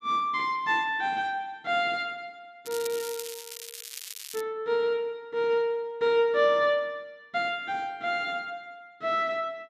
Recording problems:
crackle; from 2.5 to 4.5 s; loose cable, SNR 11 dB

